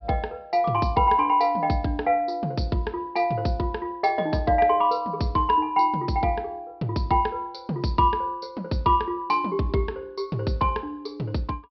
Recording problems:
treble cut off; nothing above 5.5 kHz

